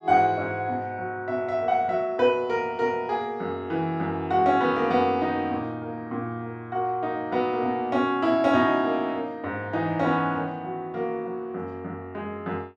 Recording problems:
none

